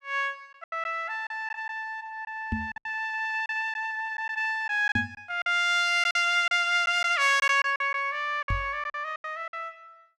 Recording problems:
packet loss; 9% of the sound replaced, filled with silence
knock on the microphone; at 2.5 s, at 5 s and at 8.5 s; peak 0 dB vs average level

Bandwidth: 15 kHz